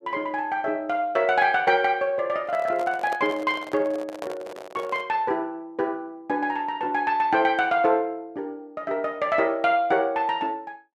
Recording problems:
microphone handling noise; from 2.5 to 5 s; peak -4 dB vs average level

